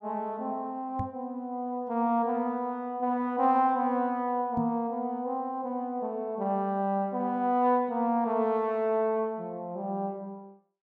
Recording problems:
microphone thump; at 1 s and at 4.5 s; peak -2 dB vs average level

